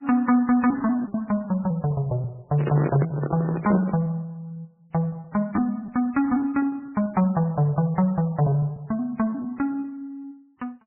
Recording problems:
codec artefacts; MP3, log-spectral distance 2 dB, nothing above 2.5 kHz
lost packets; 11% of the sound replaced, filled with repeated pitch periods
microphone handling noise; from 2.5 to 4 s; peak 0 dB vs average level

